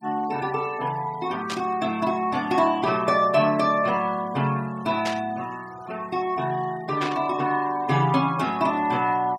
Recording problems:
denoising artefacts; signal-to-artefact ratio 21 dB
static burst; at 1.5 s, at 5 s and at 7 s; peak -3 dB vs average level

